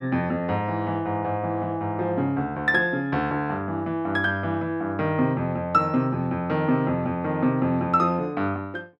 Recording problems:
none

